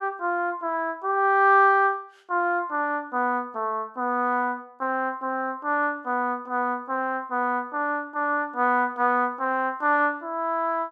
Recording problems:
none

